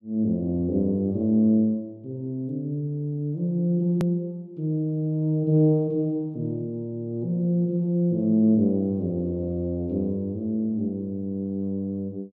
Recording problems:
click at an edit; at 4 s

